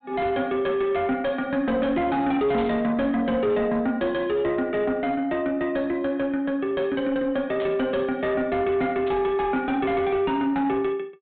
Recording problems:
treble missing; nothing above 4 kHz
distortion; soft clipping, signal-to-distortion ratio 10 dB
burst of static; at 2.5 s, at 7.5 s and at 9 s; peak -11 dB vs average level

